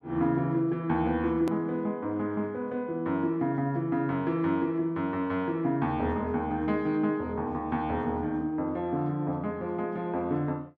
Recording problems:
edit click; at 1.5 s

